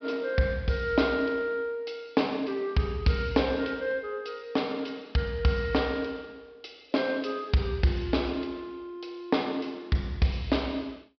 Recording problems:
treble missing; nothing above 5.5 kHz

